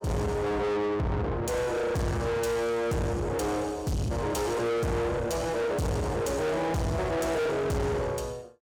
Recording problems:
distorted audio; soft clipping, signal-to-distortion ratio 6 dB

